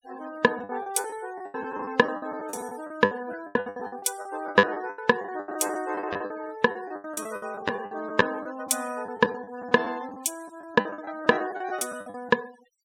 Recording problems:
denoising artefacts; signal-to-artefact ratio 21 dB
packet loss; 19% of the sound replaced, filled with the last packet

